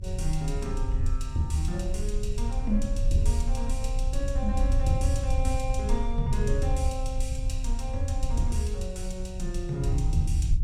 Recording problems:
low-frequency rumble; below 62 Hz, strongest tone 30 Hz, SNR -1 dB

